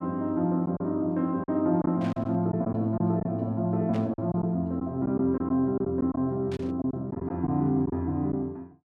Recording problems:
lost packets; 7% of the sound replaced, filled with silence
static burst; at 2 s, at 4 s and at 6.5 s; peak -13 dB vs average level

